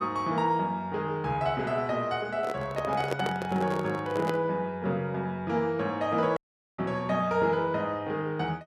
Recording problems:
microphone handling noise; from 2.5 to 4.5 s; peak +3 dB vs average level
audio cutting out; at 6.5 s

